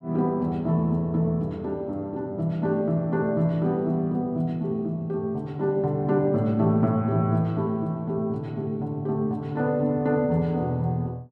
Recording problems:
none

